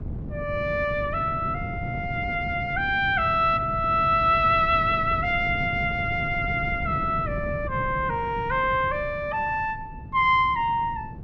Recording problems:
wind on the microphone; below 200 Hz, SNR 11 dB

